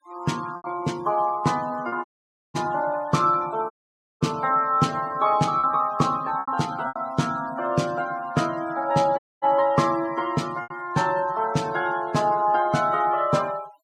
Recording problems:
noise reduction artefacts; signal-to-artefact ratio 22 dB
lost packets; 3% of the sound replaced, filled with repeated pitch periods
dropout; at 2 s, at 3.5 s for 0.5 s and at 9 s

